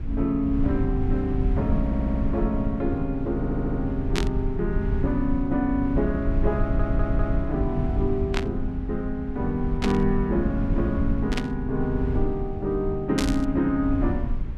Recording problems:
rumble; below 90 Hz, SNR 3 dB
audio stuttering; at 2 s, at 3.5 s and at 6.5 s
burst of static; 5 times, first at 4 s; peak +3 dB vs average level

